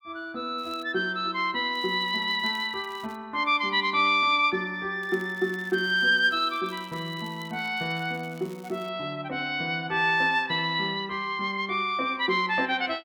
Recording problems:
crackling; at 0.5 s, from 1.5 to 3 s and from 5 to 9 s; loose cable, SNR 27 dB

